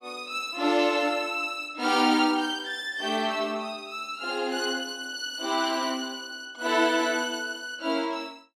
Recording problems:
none

